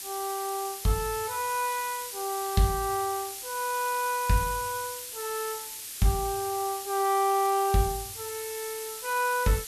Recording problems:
background hiss; SNR 7 dB

